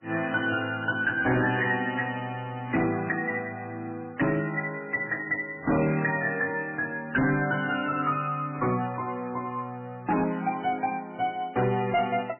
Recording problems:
codec artefacts; MP3, log-spectral distance 4 dB, nothing above 2.8 kHz
distorted audio; hard clipping, signal-to-distortion ratio 10 dB

